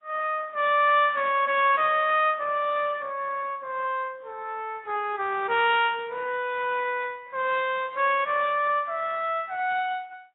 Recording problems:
lossy codec; Speex, then AAC, log-spectral distance 3 dB, nothing above 3.4 kHz

